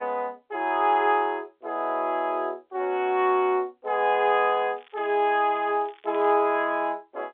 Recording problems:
phone line; 340 Hz to 3.7 kHz, G.711
crackling; from 5 to 6.5 s; loose cable, SNR 29 dB

